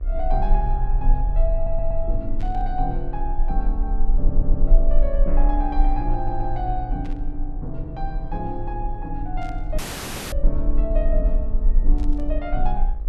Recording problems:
electrical hum; 60 Hz, harmonics up to 2 kHz, SNR 21 dB
rumble; below 36 Hz, strongest tone 24 Hz, SNR -4 dB
audio stuttering; at 1.5 s, at 4 s and at 6 s
burst of static; 4 times, first at 2.5 s; peak -13 dB vs average level
dropout; at 10 s for 0.5 s

